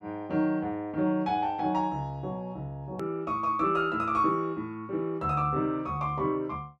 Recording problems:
click at an edit; at 3 s

